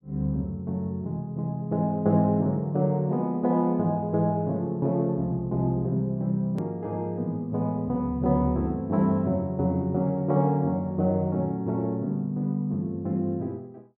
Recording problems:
edit click; at 6.5 s

